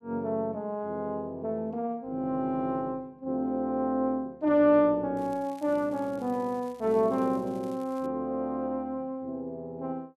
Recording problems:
crackle; from 5 to 8 s; loose cable, SNR 28 dB

